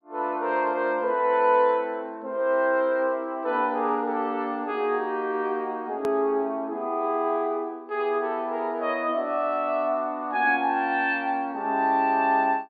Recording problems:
low-pass filter; nothing above 4.7 kHz
edit click; at 6 s

